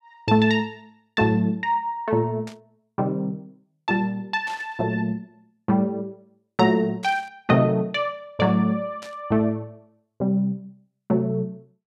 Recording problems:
burst of static; 4 times, first at 2.5 s; peak -12 dB vs average level

